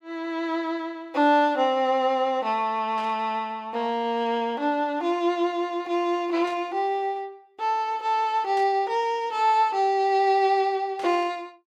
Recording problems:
burst of static; 4 times, first at 3 s; peak -14 dB vs average level

